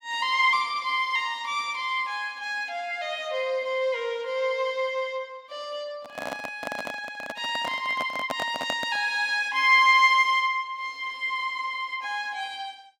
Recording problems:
microphone handling noise; from 6 to 9 s; peak -1 dB vs average level

